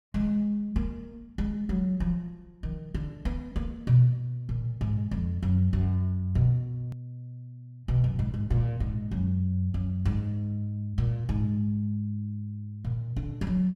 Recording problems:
click at an edit; at 7 s

